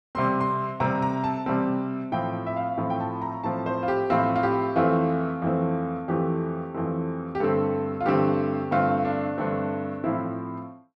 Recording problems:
none

